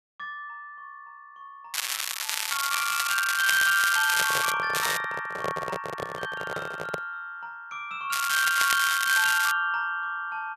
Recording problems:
crackling; from 1.5 to 4.5 s, at 5 s and from 8 to 9.5 s; loose cable, SNR 2 dB
handling noise; from 4 to 7 s; peak -2 dB vs average level

